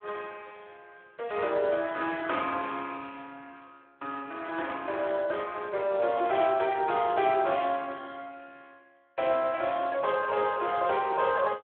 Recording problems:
phone line; 300 Hz to 3.6 kHz, Speex

